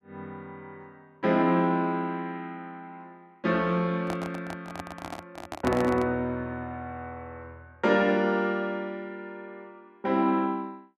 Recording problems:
microphone handling noise; from 4 to 6 s; peak +1 dB vs average level

